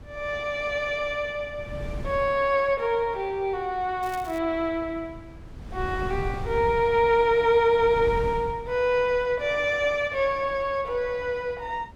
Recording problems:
wind noise; below 170 Hz, SNR 16 dB
crackling; at 4 s; loose cable, SNR 24 dB

